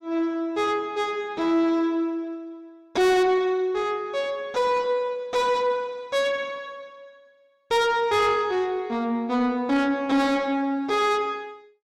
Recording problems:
distorted audio; soft clipping, signal-to-distortion ratio 10 dB

